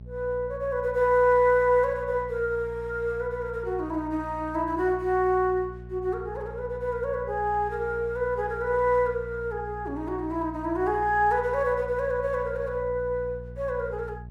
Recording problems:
hum; 60 Hz, harmonics up to 420 Hz, SNR 15 dB

